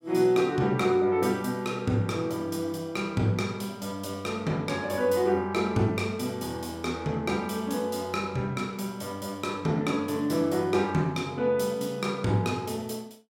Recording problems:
none

